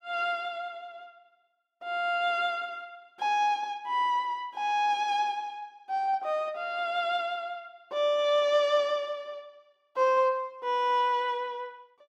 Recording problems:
none

